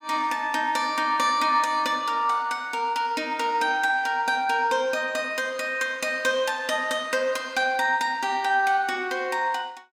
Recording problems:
none

